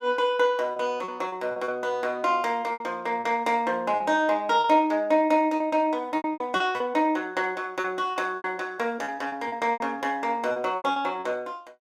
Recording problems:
packet loss; 11% of the sound replaced, filled with repeated pitch periods

